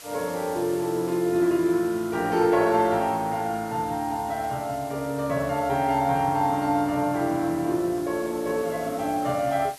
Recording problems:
hiss; slope +1 dB per octave, SNR 19 dB

